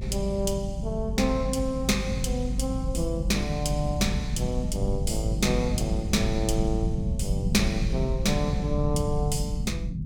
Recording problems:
low-frequency rumble; below 160 Hz, SNR 1 dB

